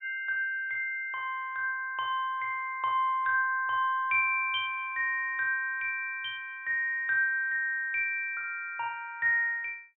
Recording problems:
low-pass filter; nothing above 4 kHz

